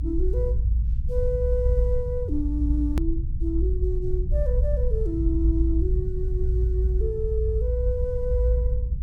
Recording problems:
rumble; below 60 Hz, strongest tone 56 Hz, SNR -4 dB
hard cut with a click; at 3 s

